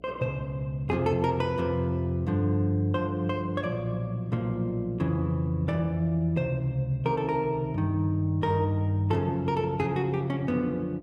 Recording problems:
electrical hum; 60 Hz, harmonics up to 720 Hz, SNR 26 dB

